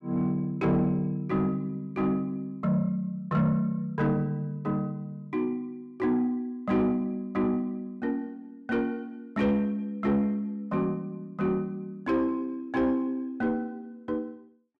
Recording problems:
distortion; soft clipping, signal-to-distortion ratio 10 dB

